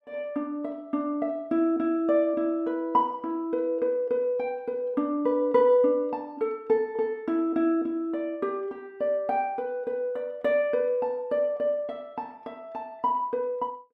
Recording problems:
none

